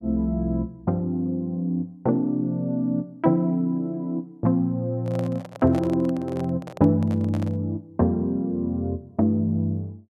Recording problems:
microphone handling noise; from 5 to 7.5 s; peak -8 dB vs average level

